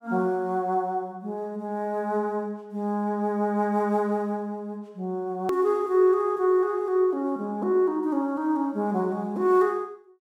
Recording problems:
click at an edit; at 5.5 s

